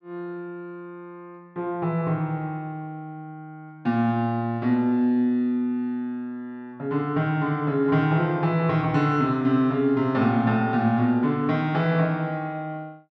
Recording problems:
none

